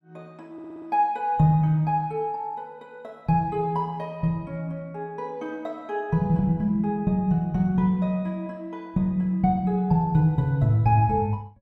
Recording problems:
audio stuttering; at 0.5 s

